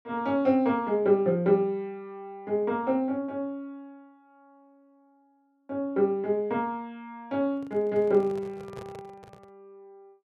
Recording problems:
microphone handling noise; from 7.5 to 9.5 s; peak -11 dB vs average level

